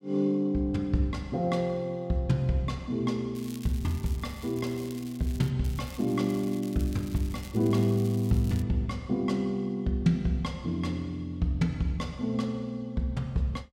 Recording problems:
crackling; from 3.5 to 5.5 s and from 5.5 to 8.5 s; loose cable, SNR 19 dB

